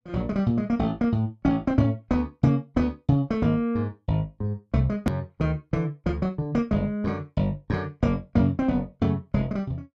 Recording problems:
click at an edit; at 5 s

